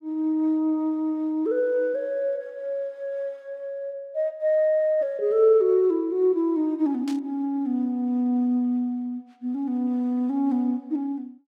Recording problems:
static burst; at 7 s; peak -12 dB vs average level

